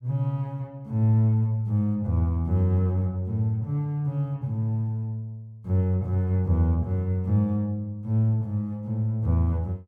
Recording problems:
none

